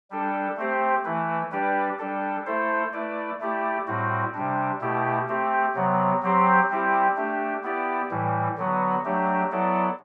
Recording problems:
none

